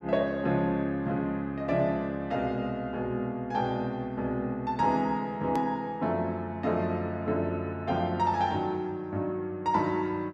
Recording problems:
click at an edit; at 5.5 s

